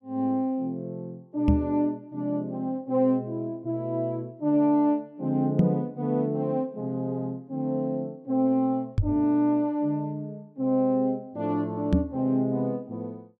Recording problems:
microphone thump; 4 times, first at 1.5 s; peak +9 dB vs average level

